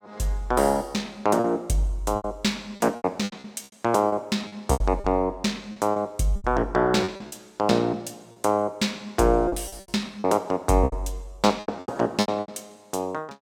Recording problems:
packet loss; 12% of the sound replaced, filled with repeated pitch periods

